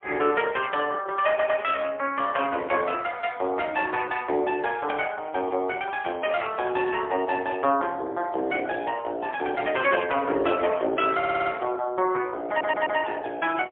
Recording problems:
phone line; 260 Hz to 3.5 kHz, AMR-NB, then MP3
stutter; at 1.5 s, at 11 s and at 12 s

